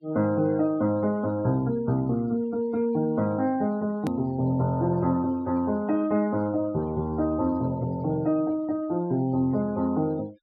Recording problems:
low-pass filter; nothing above 5 kHz
noise reduction artefacts; signal-to-artefact ratio 25 dB
hard cut with a click; at 4 s

